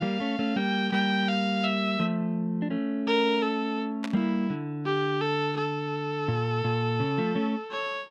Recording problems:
burst of static; at 4 s; peak -5 dB vs average level

